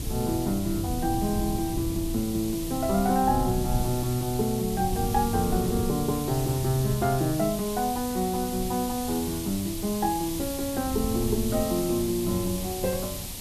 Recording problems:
background hiss; SNR 9 dB
low-frequency rumble; below 150 Hz, SNR 8 dB

